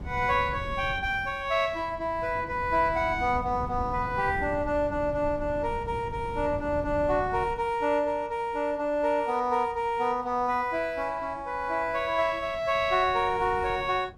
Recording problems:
wind noise; below 180 Hz, SNR 13 dB

